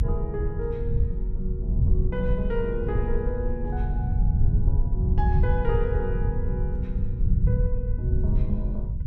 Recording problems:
rumble; below 96 Hz, SNR -6 dB

